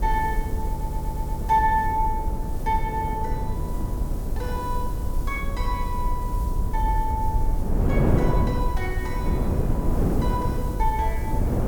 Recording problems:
hiss; slope +1 dB per octave, SNR 18 dB
low-frequency rumble; below 62 Hz, SNR 1 dB
wind noise; below 330 Hz, SNR 0 dB
audio stuttering; at 0.5 s

